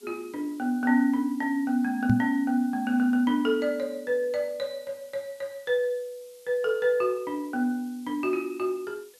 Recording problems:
background hiss; SNR 27 dB
microphone thump; at 2 s; peak +6 dB vs average level

